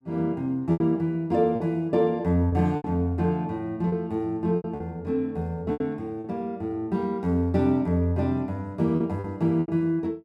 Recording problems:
packet loss; 7% of the sound replaced, filled with repeated pitch periods

